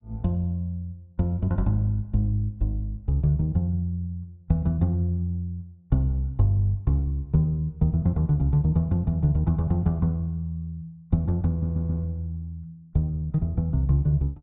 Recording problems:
low-pass filter; nothing above 4 kHz
stutter; at 11 s

